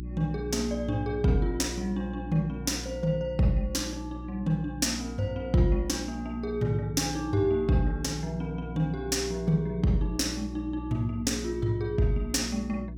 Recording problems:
hum; 60 Hz, harmonics up to 360 Hz, SNR 10 dB

